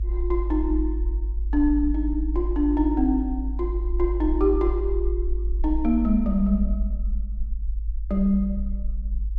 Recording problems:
low-frequency rumble; below 52 Hz, strongest tone 50 Hz, SNR 3 dB

